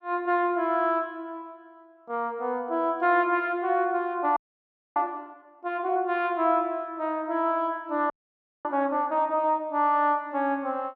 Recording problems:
audio freezing; at 4.5 s for 0.5 s and at 8 s for 0.5 s

